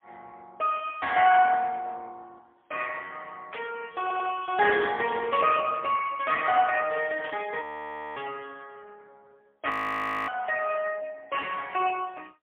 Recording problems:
phone line; 340 Hz to 3.3 kHz, AMR-NB, then MP3
burst of static; at 3.5 s and at 7 s; peak -9 dB vs average level
stutter; at 4 s
frozen audio; at 7.5 s for 0.5 s and at 9.5 s for 0.5 s

